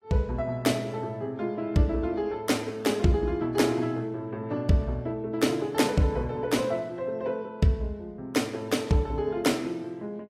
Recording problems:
lossy codec; AAC, log-spectral distance 2 dB, nothing above 14.7 kHz

